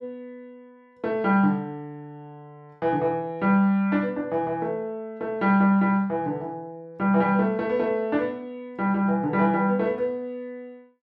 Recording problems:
none

